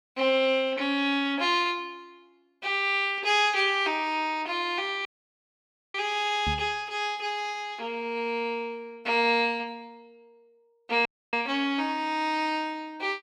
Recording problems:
dropout; at 5 s for 1 s and at 11 s
microphone bump; at 6.5 s; peak -2 dB vs average level

